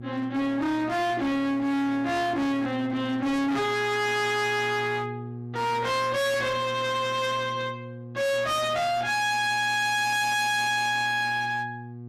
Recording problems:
distorted audio; hard clipping, signal-to-distortion ratio 6 dB
hum; 60 Hz, harmonics up to 720 Hz, SNR 14 dB

